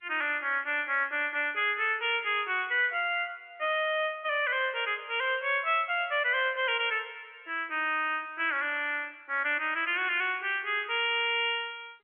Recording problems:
phone line; 300 Hz to 3.4 kHz, G.711

